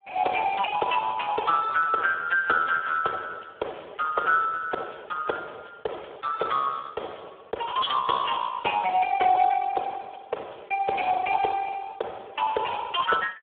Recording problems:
telephone audio; 340 Hz to 3 kHz, Speex

